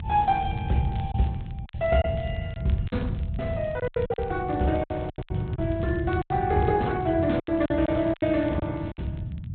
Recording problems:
low-pass filter; nothing above 3.8 kHz
codec artefacts; Opus, log-spectral distance 2 dB
low-frequency rumble; below 140 Hz, SNR 4 dB
crackle; vinyl, SNR 27 dB
lost packets; 10% of the sound replaced, filled with silence

